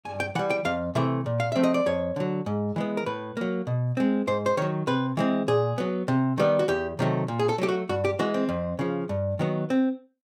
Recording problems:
none

